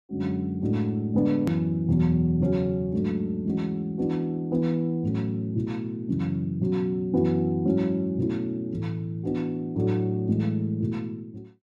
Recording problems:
click at an edit; at 1.5 s

